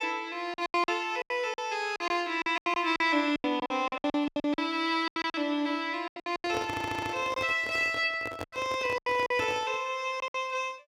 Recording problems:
packet loss; 16% of the sound replaced, filled with silence
microphone handling noise; from 6.5 to 10 s; peak -3 dB vs average level
stutter; at 6.5 s

